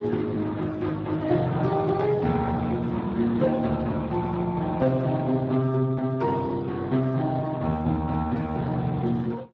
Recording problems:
lossy compression; Speex, log-spectral distance 3 dB

